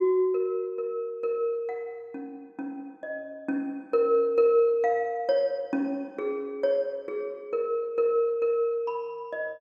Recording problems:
none

